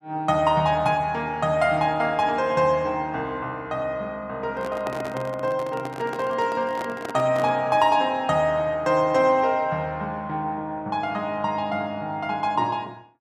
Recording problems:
handling noise; from 4.5 to 7.5 s; peak -5 dB vs average level

